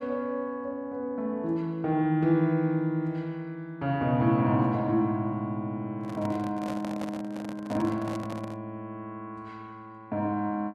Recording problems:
handling noise; from 6 to 8.5 s; peak -5 dB vs average level

